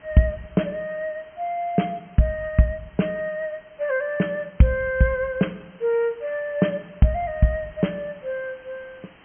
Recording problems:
treble missing; nothing above 3.2 kHz
hiss; SNR 27 dB

